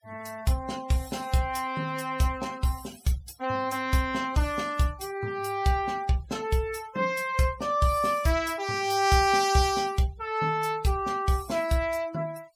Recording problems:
denoising artefacts; signal-to-artefact ratio 21 dB

